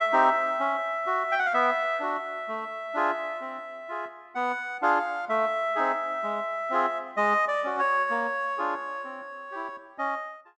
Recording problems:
none

